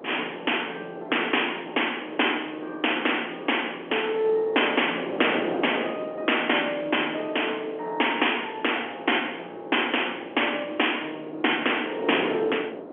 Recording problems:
phone line; 260 Hz to 3.3 kHz, G.711
wind noise; below 600 Hz, SNR 11 dB

